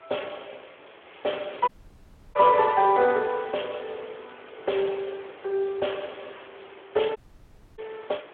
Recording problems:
phone line; 320 Hz to 3.4 kHz, Speex
background hiss; SNR 22 dB
crackle; from 1 to 3.5 s; loose cable, SNR 27 dB
dropout; at 1.5 s for 0.5 s and at 7 s for 0.5 s

